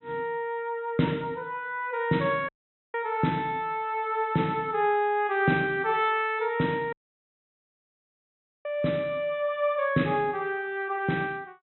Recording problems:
treble missing; nothing above 3.9 kHz
dropout; at 2.5 s and at 7 s for 1.5 s

